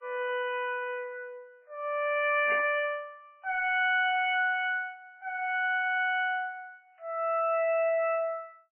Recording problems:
lossy codec; MP3, log-spectral distance 2 dB, nothing above 3 kHz
distorted audio; soft clipping, signal-to-distortion ratio 10 dB
burst of static; at 2.5 s; peak -4 dB vs average level

